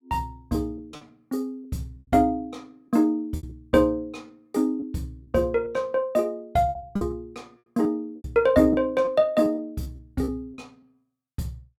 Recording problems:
packet loss; 8% of the sound replaced, filled with repeated pitch periods

